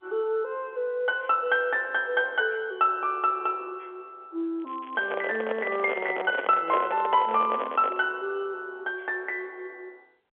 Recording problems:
telephone audio; 280 Hz to 3.6 kHz, G.711
crackling; from 4.5 to 6 s; loose cable, SNR 27 dB
handling noise; from 5 to 8 s; peak +2 dB vs average level

